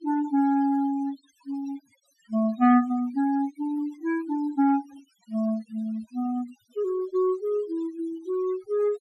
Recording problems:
noise reduction artefacts; signal-to-artefact ratio 22 dB

